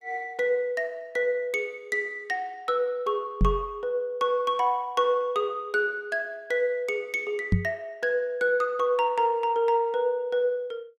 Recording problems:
microphone thump; at 3.5 s and at 7.5 s; peak +7 dB vs average level

